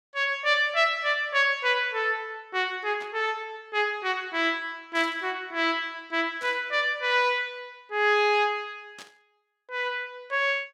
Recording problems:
static burst; 4 times, first at 3 s; peak -13 dB vs average level

